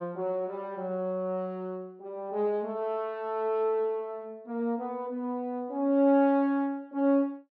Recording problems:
none

